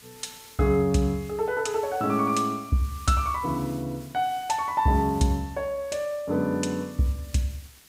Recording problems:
background hiss; SNR 22 dB

